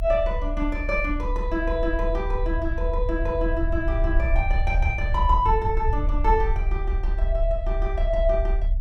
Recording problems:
low-frequency rumble; below 58 Hz, strongest tone 36 Hz, SNR 0 dB

